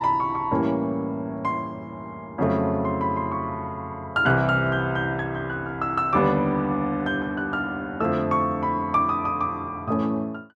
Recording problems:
none

